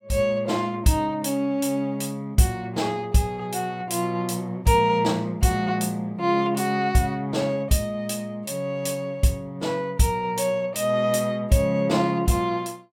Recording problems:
none

